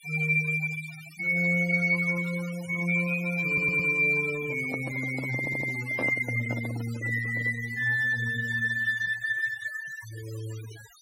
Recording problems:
denoising artefacts; signal-to-artefact ratio 20 dB
stutter; at 3.5 s and at 5.5 s
microphone handling noise; from 4.5 to 7.5 s; peak -4 dB vs average level

